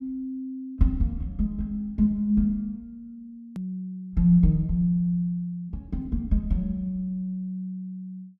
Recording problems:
edit click; at 3.5 s

